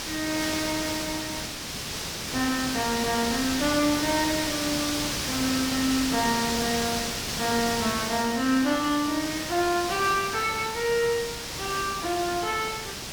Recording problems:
hiss; slope -1 dB per octave, SNR 2 dB

